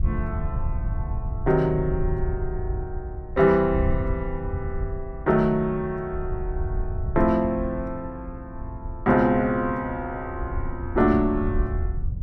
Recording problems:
wind noise; below 86 Hz, SNR 7 dB

